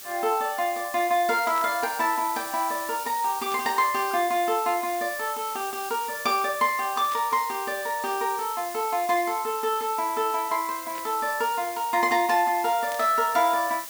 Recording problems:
hiss; slope +1 dB per octave, SNR 11 dB
burst of static; 5 times, first at 1.5 s; peak -11 dB vs average level

